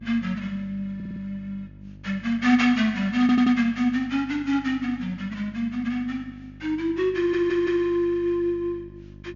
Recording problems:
treble cut off; nothing above 7 kHz
hum; 50 Hz, harmonics up to 600 Hz, SNR 21 dB
audio stuttering; at 1 s, at 3 s and at 7 s

